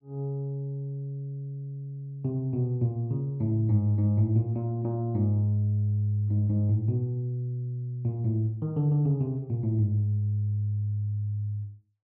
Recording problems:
none

